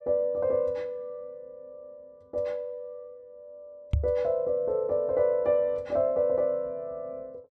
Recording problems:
microphone thump; at 4 s; peak +6 dB vs average level

